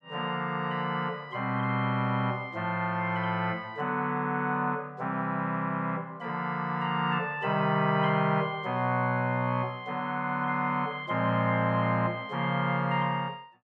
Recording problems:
none

